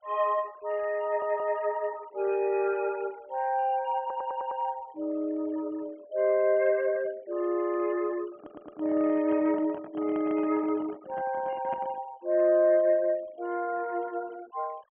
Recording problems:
treble missing; nothing above 3.2 kHz
noise reduction artefacts; signal-to-artefact ratio 25 dB
stutter; at 1 s, at 4 s and at 8.5 s
handling noise; from 8.5 to 12 s; peak -10 dB vs average level

